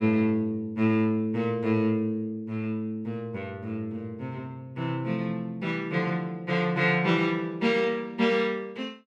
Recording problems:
none

